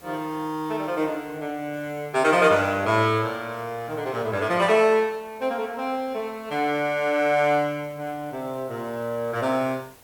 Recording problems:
hiss; slope -4 dB per octave, SNR 26 dB

